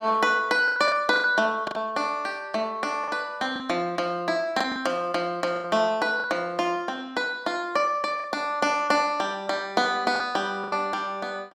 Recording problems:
packet loss; 6% of the sound replaced, filled with the last packet

